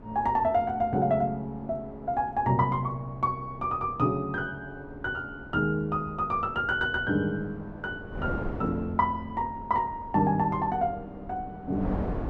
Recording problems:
wind noise; below 490 Hz, SNR 14 dB

